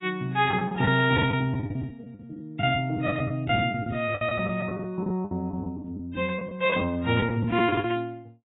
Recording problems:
lossy codec; AAC, log-spectral distance 2 dB, nothing above 3.4 kHz
lost packets; 14% of the sound replaced, filled with the last packet

